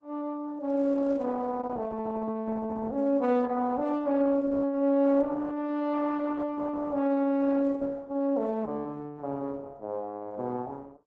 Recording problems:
lossy compression; Opus, log-spectral distance 2 dB

